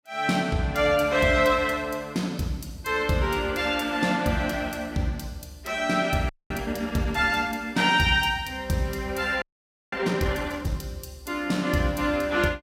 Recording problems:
frozen audio; at 6.5 s and at 9.5 s for 0.5 s

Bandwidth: 16 kHz